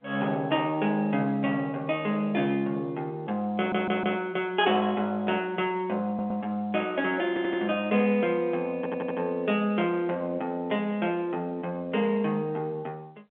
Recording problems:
phone line; 280 Hz to 3.5 kHz, G.711
audio stuttering; 4 times, first at 3.5 s

